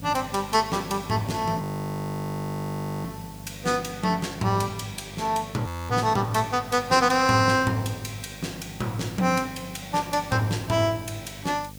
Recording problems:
mains hum; 50 Hz, harmonics up to 750 Hz, SNR 17 dB
hiss; slope +3 dB per octave, SNR 22 dB
frozen audio; at 1.5 s for 1.5 s and at 5.5 s

